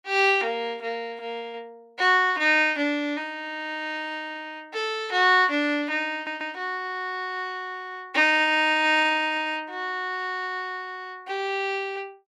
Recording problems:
audio stuttering; at 6 s

